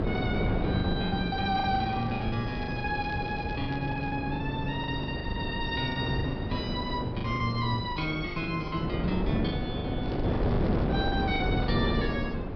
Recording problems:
treble missing; nothing above 5.5 kHz
hum; 50 Hz, harmonics up to 350 Hz, SNR 22 dB
wind noise; below 410 Hz, SNR 0 dB
packet loss; 12% of the sound replaced, filled with the last packet
crackle; from 1.5 to 4 s and at 10 s; loose cable, SNR 21 dB

